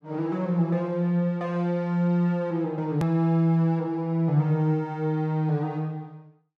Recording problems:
edit click; at 3 s

